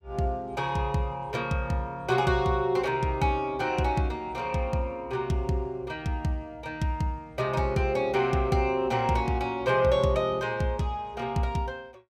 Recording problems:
none

